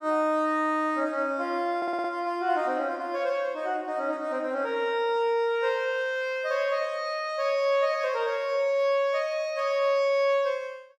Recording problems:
stutter; at 2 s

